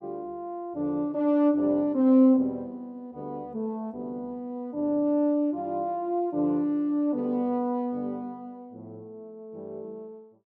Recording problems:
none

